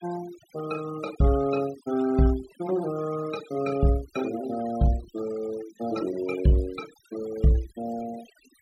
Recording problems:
noise reduction artefacts; signal-to-artefact ratio 17 dB

